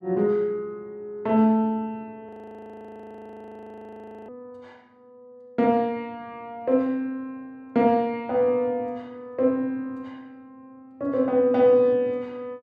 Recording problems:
audio freezing; at 2.5 s for 2 s

